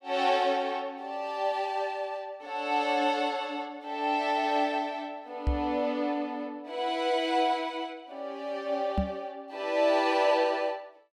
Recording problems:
microphone bump; at 5.5 s and at 9 s; peak +4 dB vs average level

